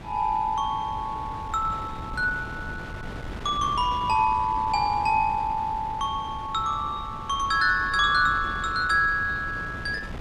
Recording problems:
wind noise; below 450 Hz, SNR 13 dB

